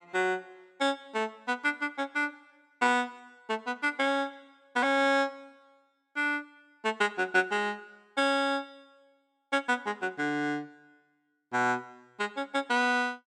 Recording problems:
none

